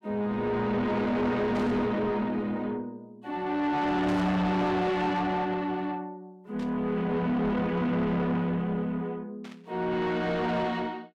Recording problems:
distorted audio; soft clipping, signal-to-distortion ratio 7 dB
static burst; 4 times, first at 1.5 s; peak -13 dB vs average level

